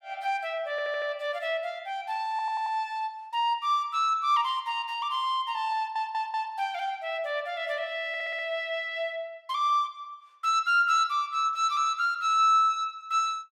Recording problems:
audio stuttering; 4 times, first at 0.5 s

